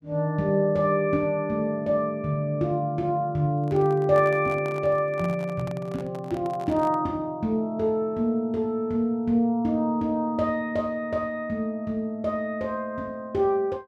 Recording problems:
handling noise; from 3.5 to 7 s; peak -9 dB vs average level

